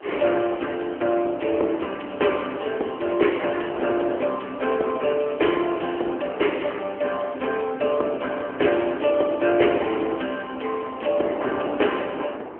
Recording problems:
telephone audio; 280 Hz to 3.2 kHz, AMR-NB
wind on the microphone; below 790 Hz, SNR 13 dB

